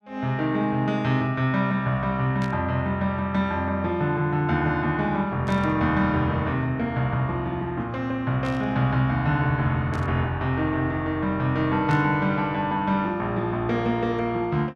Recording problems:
static burst; 5 times, first at 2.5 s; peak -13 dB vs average level

